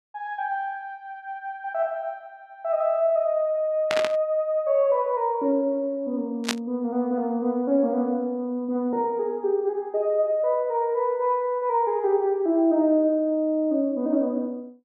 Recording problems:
static burst; at 4 s and at 6.5 s; peak +4 dB vs average level

